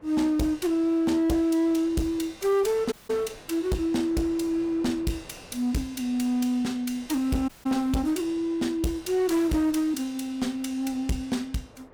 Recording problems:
distorted audio; hard clipping, uneven, signal-to-distortion ratio 10 dB
wind noise; below 880 Hz, SNR 24 dB
audio cutting out; at 3 s and at 7.5 s

